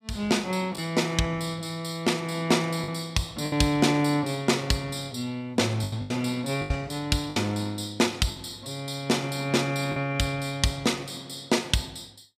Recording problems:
lost packets; 4% of the sound replaced, filled with the last packet

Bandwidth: 15 kHz